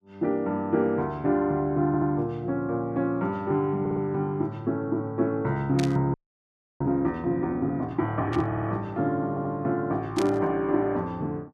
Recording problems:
stutter; 4 times, first at 2 s
burst of static; at 6 s, at 8.5 s and at 10 s; peak -3 dB vs average level
audio freezing; at 6 s for 0.5 s

